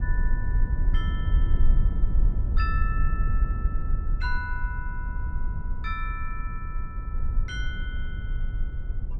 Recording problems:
low-frequency rumble; below 58 Hz, strongest tone 22 Hz, SNR -9 dB

